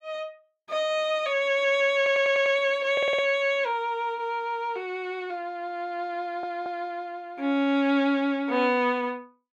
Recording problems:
stutter; at 2 s, at 3 s and at 6 s

